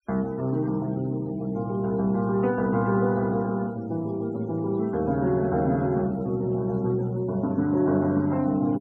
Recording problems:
denoising artefacts; signal-to-artefact ratio 26 dB

